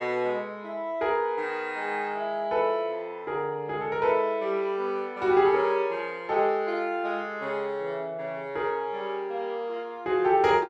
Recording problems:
none

